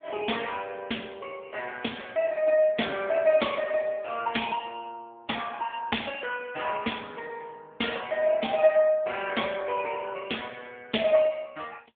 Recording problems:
phone line; 280 Hz to 3.5 kHz, AMR-NB

